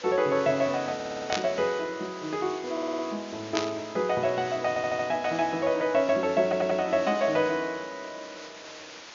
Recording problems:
treble missing; nothing above 7 kHz
background hiss; slope 0 dB per octave, SNR 16 dB
stutter; 4 times, first at 1 s
static burst; at 1.5 s and at 3.5 s; peak +3 dB vs average level

